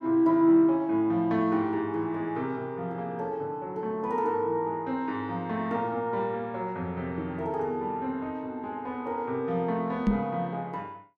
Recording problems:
microphone bump; at 10 s; peak +7 dB vs average level

